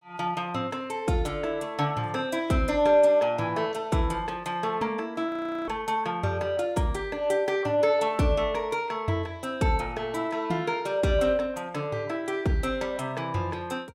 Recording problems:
audio freezing; at 5.5 s

